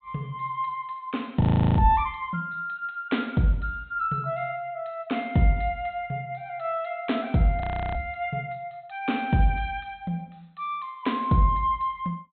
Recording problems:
treble cut off; nothing above 4 kHz
frozen audio; at 1.5 s and at 7.5 s

